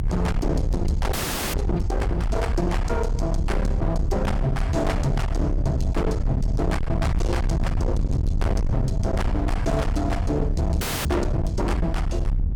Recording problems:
distorted audio; hard clipping, uneven, signal-to-distortion ratio 6 dB
rumble; below 110 Hz, SNR 0 dB
frozen audio; at 1 s and at 11 s

